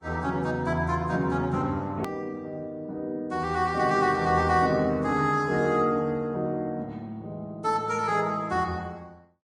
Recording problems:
lossy codec; Vorbis, log-spectral distance 2 dB, nothing above 18.3 kHz
click at an edit; at 2 s

